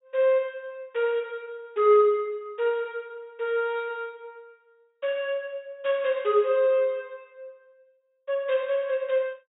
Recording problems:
low-pass filter; nothing above 4 kHz

